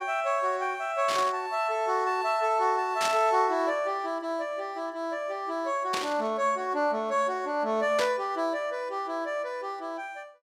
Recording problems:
burst of static; 4 times, first at 1 s; peak +1 dB vs average level

